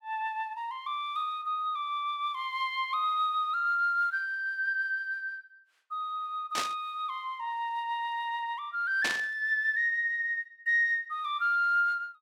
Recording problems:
static burst; at 6.5 s and at 9 s; peak +3 dB vs average level

